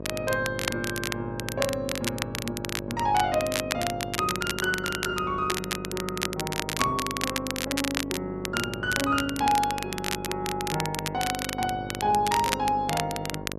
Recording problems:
hum; 50 Hz, harmonics up to 1.2 kHz, SNR 9 dB
crackling; vinyl, SNR 3 dB

